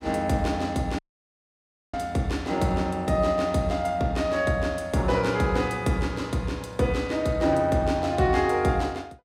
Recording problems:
audio cutting out; at 1 s for 1 s

